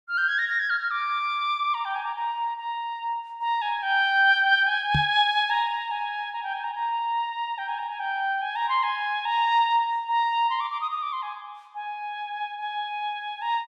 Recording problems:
knock on the microphone; at 5 s; peak +3 dB vs average level

